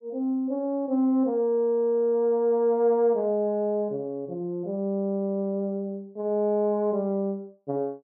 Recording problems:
none

